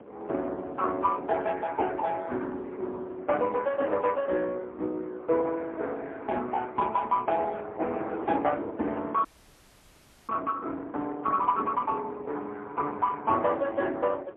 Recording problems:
telephone audio; 260 Hz to 3.4 kHz, AMR-NB, then MP3
wind noise; below 590 Hz, SNR 17 dB
audio freezing; at 9.5 s for 1 s

